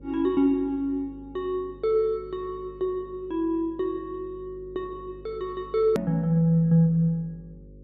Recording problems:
hum; 50 Hz, harmonics up to 550 Hz, SNR 22 dB
edit click; at 6 s

